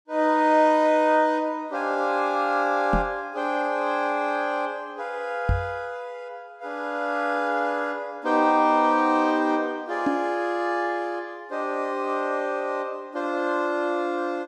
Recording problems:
knock on the microphone; at 3 s, at 5.5 s and at 10 s; peak +3 dB vs average level

